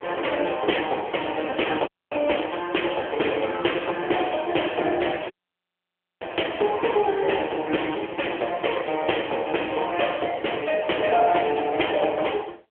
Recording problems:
phone line; 300 Hz to 3.3 kHz, AMR-NB
dropout; at 2 s and at 5.5 s for 1 s

